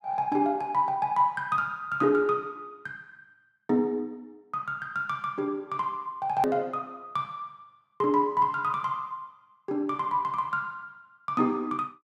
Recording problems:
click at an edit; at 6.5 s

